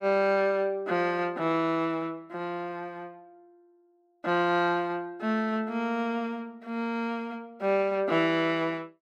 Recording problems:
none

